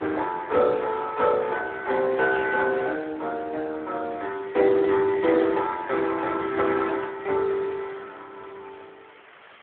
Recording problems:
telephone audio; 280 Hz to 3.7 kHz, Speex
hiss; SNR 25 dB
static burst; at 7 s; peak -13 dB vs average level

